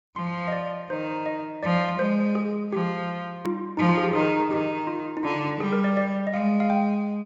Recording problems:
low-pass filter; nothing above 8 kHz
edit click; at 3.5 s

